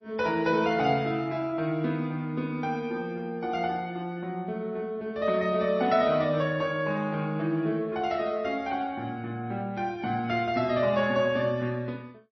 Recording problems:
lossy codec; MP3, log-spectral distance 2 dB, nothing above 5.2 kHz

